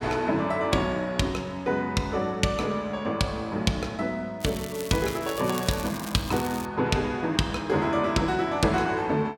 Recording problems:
crackle; from 4.5 to 6.5 s; loose cable, SNR 13 dB

